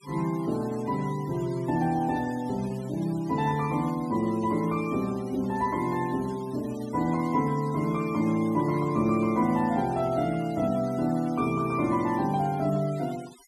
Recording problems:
noise reduction artefacts; signal-to-artefact ratio 21 dB

